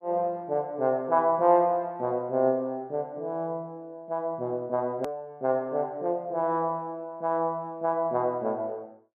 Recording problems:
click at an edit; at 5 s

